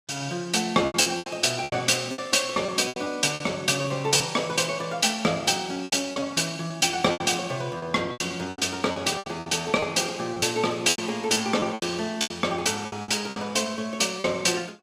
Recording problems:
packet loss; 12% of the sound replaced, filled with repeated pitch periods

